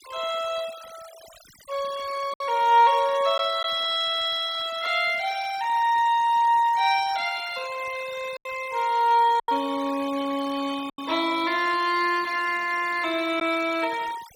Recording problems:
denoising artefacts; signal-to-artefact ratio 18 dB
packet loss; 2% of the sound replaced, filled with silence

